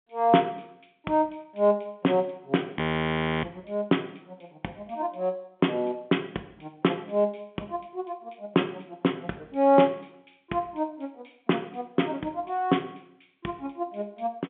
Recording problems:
phone line; 190 Hz to 3.5 kHz, G.711
audio freezing; at 3 s for 0.5 s

